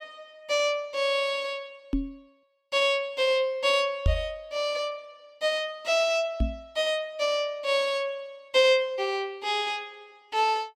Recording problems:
microphone thump; at 2 s, at 4 s and at 6.5 s; peak +5 dB vs average level

